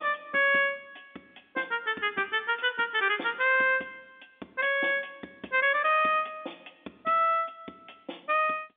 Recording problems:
phone line; 220 Hz to 3.6 kHz, G.711

